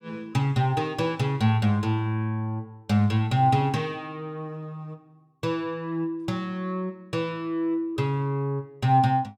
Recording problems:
none

